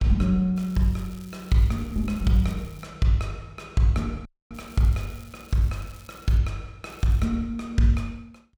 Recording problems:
crackle; from 0.5 to 3 s, from 4.5 to 6.5 s and at 7 s; loose cable, SNR 26 dB
dropout; at 4.5 s

